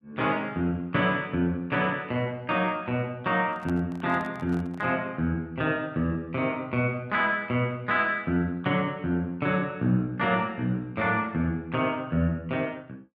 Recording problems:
handling noise; from 3.5 to 5 s; peak -9 dB vs average level

